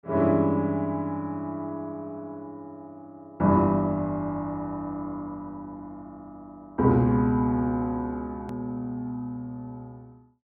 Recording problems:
edit click; at 8.5 s

